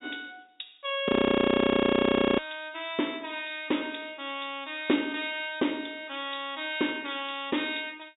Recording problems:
treble cut off; nothing above 4 kHz
audio freezing; at 1 s for 1.5 s

